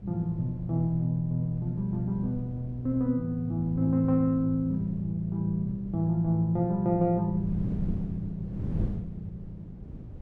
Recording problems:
wind on the microphone; below 190 Hz, SNR 12 dB

